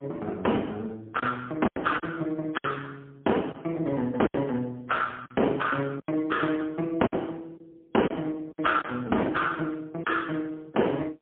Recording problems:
telephone audio; 240 Hz to 3.6 kHz, AMR-NB, then MP3
packet loss; 6% of the sound replaced, filled with silence

